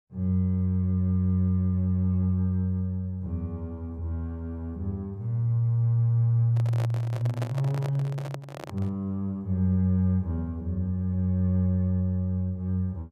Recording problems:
microphone handling noise; from 6.5 to 9 s; peak -4 dB vs average level

